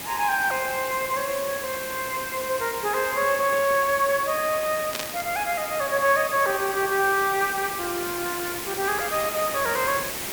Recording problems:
hiss; slope -2 dB per octave, SNR 7 dB
burst of static; at 5 s; peak -1 dB vs average level

